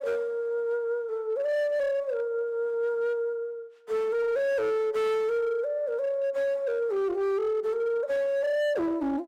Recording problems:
distortion; hard clipping, signal-to-distortion ratio 11 dB

